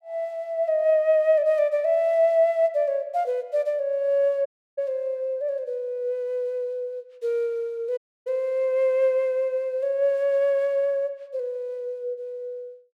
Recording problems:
dropout; at 4.5 s and at 8 s

